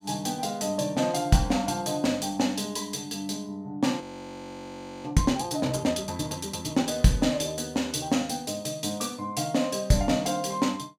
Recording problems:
frozen audio; at 4 s for 1 s

